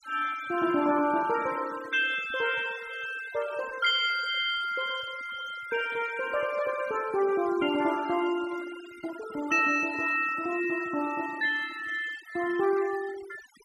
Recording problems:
denoising artefacts; signal-to-artefact ratio 16 dB

